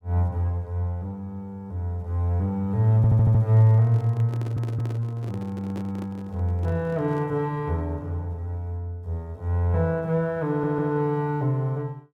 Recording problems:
audio stuttering; at 3 s, at 4.5 s and at 10 s
microphone handling noise; from 3.5 to 7.5 s; peak -10 dB vs average level

